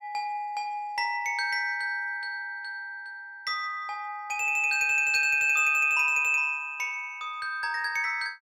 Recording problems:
none

